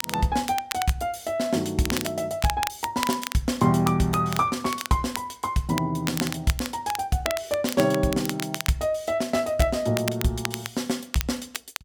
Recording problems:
crackle; vinyl, SNR 8 dB

